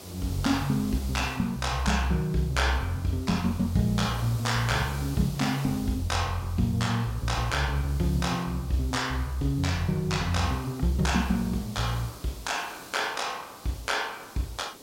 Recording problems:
background hiss; SNR 17 dB

